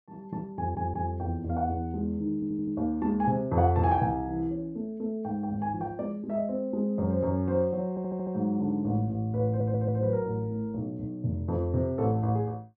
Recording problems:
audio stuttering; 4 times, first at 0.5 s

